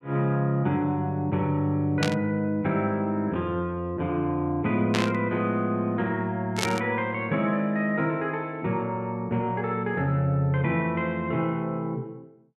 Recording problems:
static burst; at 2 s, at 5 s and at 6.5 s; peak +4 dB vs average level

